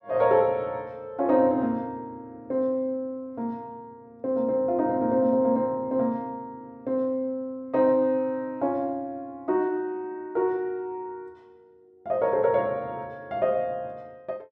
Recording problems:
none

